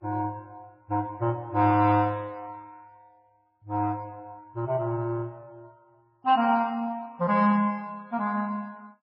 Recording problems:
lossy codec; Vorbis, then MP3, log-spectral distance 2 dB, nothing above 4.5 kHz

